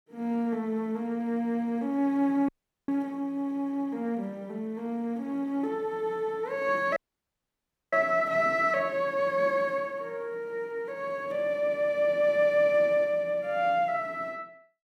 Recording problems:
audio cutting out; at 2.5 s and at 7 s for 1 s

